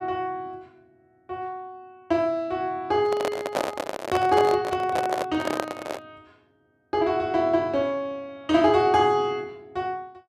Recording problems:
microphone handling noise; from 3 to 6 s; peak +2 dB vs average level

